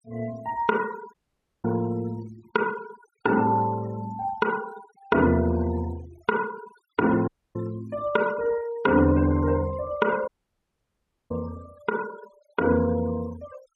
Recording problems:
denoising artefacts; signal-to-artefact ratio 20 dB
dropout; at 1 s for 0.5 s, at 7.5 s and at 10 s for 1 s

